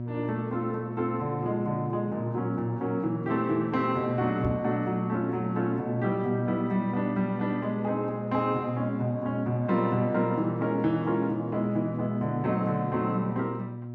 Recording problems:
hum; 60 Hz, harmonics up to 720 Hz, SNR 7 dB
microphone thump; at 4.5 s; peak 0 dB vs average level

